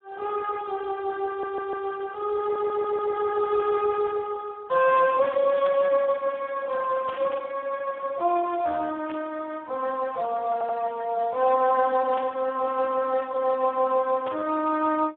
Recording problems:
telephone audio; 320 Hz to 2 kHz, Speex
audio stuttering; at 1.5 s, at 2.5 s and at 11 s
static burst; 5 times, first at 5.5 s; peak -8 dB vs average level

